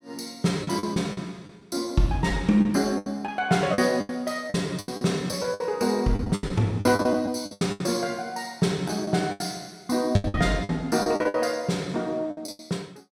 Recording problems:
packet loss; 14% of the sound replaced, filled with the last packet

